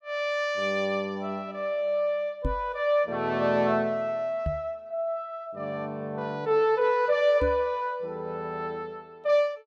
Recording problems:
microphone thump; at 2.5 s, at 4.5 s and at 7.5 s; peak +1 dB vs average level

